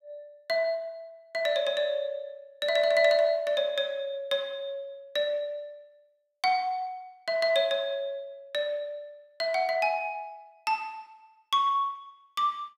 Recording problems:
none

